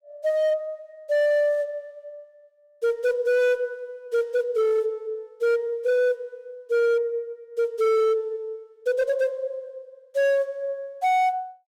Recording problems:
distorted audio; hard clipping, signal-to-distortion ratio 11 dB

